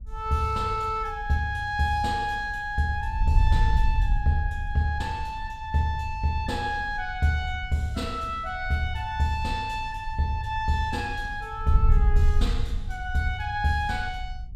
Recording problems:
wind on the microphone; below 66 Hz, SNR 4 dB

